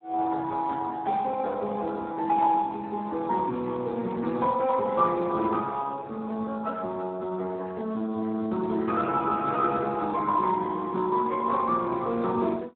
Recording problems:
phone line; 150 Hz to 4 kHz, Speex

